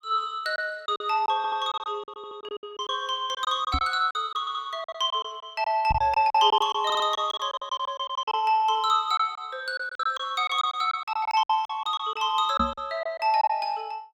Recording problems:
packet loss; 13% of the sound replaced, filled with silence
audio stuttering; 4 times, first at 1.5 s
knock on the microphone; at 3.5 s, at 6 s and at 13 s; peak 0 dB vs average level

